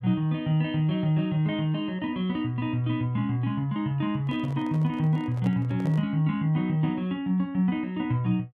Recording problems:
handling noise; from 4 to 6 s; peak -9 dB vs average level

